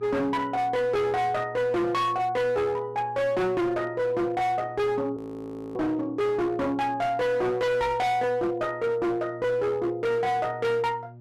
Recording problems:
distorted audio; hard clipping, signal-to-distortion ratio 8 dB
hum; 60 Hz, harmonics up to 600 Hz, SNR 20 dB
audio freezing; at 5 s for 0.5 s

